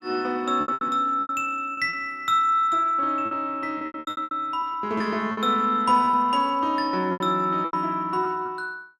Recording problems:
lost packets; 12% of the sound replaced, filled with repeated pitch periods

